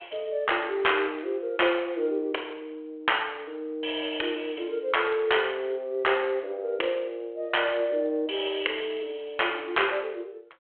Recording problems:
phone line; 320 Hz to 3.3 kHz, G.726

